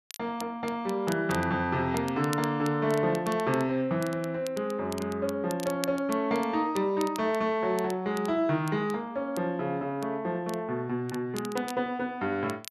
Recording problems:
crackling; vinyl, SNR 17 dB

